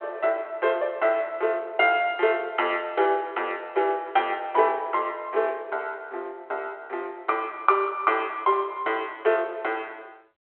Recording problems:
phone line; 340 Hz to 3.3 kHz, G.726

